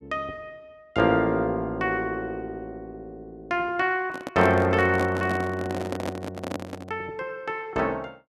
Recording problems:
handling noise; from 4 to 7 s; peak -1 dB vs average level

